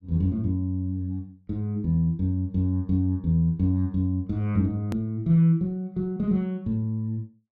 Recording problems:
edit click; at 5 s

